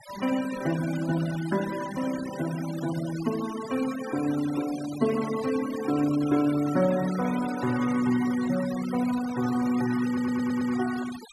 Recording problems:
noise reduction artefacts; signal-to-artefact ratio 14 dB
audio stuttering; at 10 s

